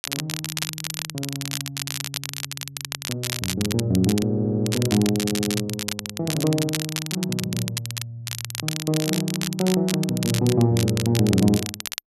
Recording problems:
crackle; vinyl, SNR 6 dB
stutter; at 4 s and at 5 s

